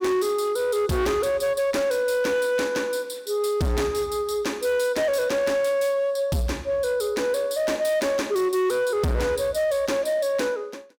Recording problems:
distorted audio; hard clipping, signal-to-distortion ratio 11 dB

